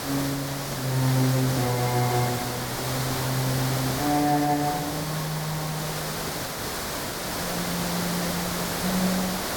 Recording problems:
hiss; SNR 1 dB

